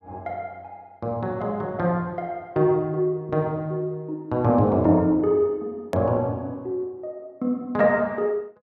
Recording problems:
hard cut with a click; at 6 s

